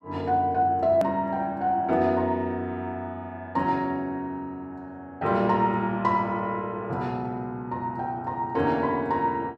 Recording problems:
edit click; at 1 s

